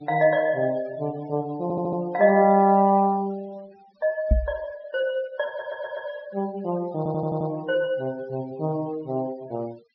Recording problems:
low-pass filter; nothing above 5.5 kHz
denoising artefacts; signal-to-artefact ratio 24 dB
stutter; at 1.5 s, at 5.5 s and at 7 s
knock on the microphone; at 4.5 s; peak +7 dB vs average level

